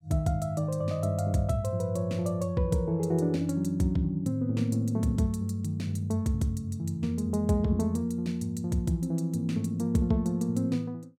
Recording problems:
none

